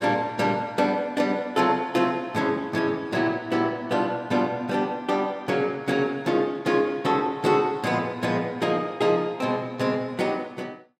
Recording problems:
none

